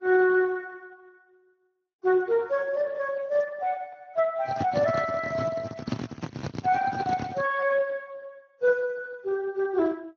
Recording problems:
codec artefacts; Vorbis, then Speex, log-spectral distance 3 dB
handling noise; from 4.5 to 7.5 s; peak +1 dB vs average level

